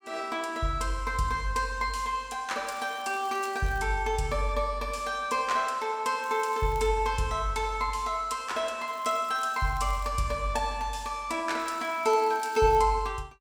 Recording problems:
crackle; 4 times, first at 2.5 s; loose cable, SNR 23 dB

